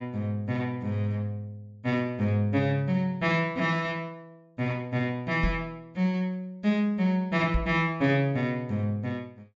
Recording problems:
treble missing; nothing above 8 kHz
microphone thump; at 5.5 s and at 7.5 s; peak +3 dB vs average level

